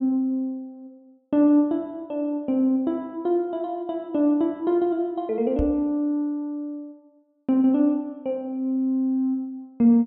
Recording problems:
microphone thump; at 5.5 s; peak 0 dB vs average level

